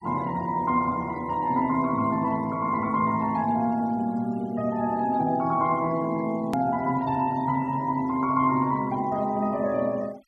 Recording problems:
denoising artefacts; signal-to-artefact ratio 26 dB
edit click; at 6.5 s

